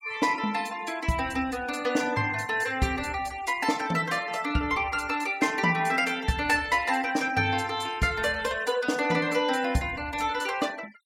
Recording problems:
denoising artefacts; signal-to-artefact ratio 21 dB

